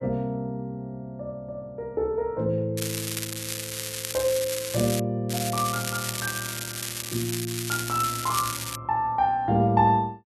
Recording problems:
crackle; from 3 to 5 s and from 5.5 to 9 s; loose cable, SNR 4 dB

